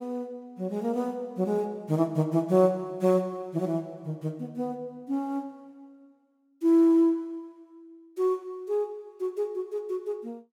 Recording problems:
none

